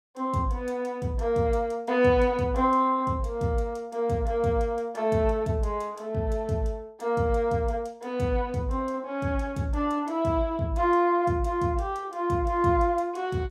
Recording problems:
none

